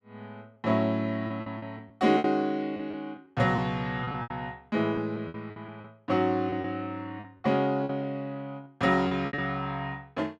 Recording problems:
lost packets; 9% of the sound replaced, filled with repeated pitch periods

